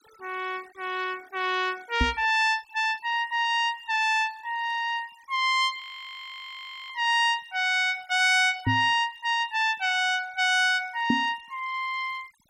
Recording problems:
denoising artefacts; signal-to-artefact ratio 25 dB
knock on the microphone; at 2 s, at 8.5 s and at 11 s; peak +4 dB vs average level
audio freezing; at 6 s for 1 s

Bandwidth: 16.5 kHz